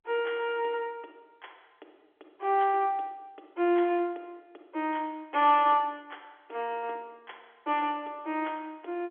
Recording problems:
phone line; 280 Hz to 3.5 kHz, G.711

